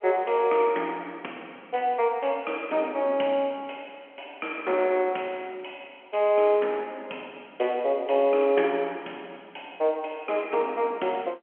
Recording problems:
telephone audio; 240 Hz to 3.3 kHz, G.711

